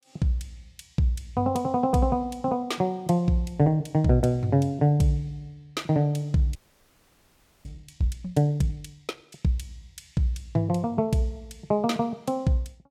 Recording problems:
audio freezing; at 6.5 s for 1 s

